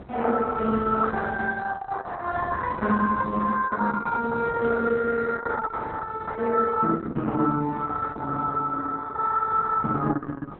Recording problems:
lossy compression; Opus, log-spectral distance 4 dB, nothing above 3.8 kHz
wind on the microphone; below 530 Hz, SNR 18 dB

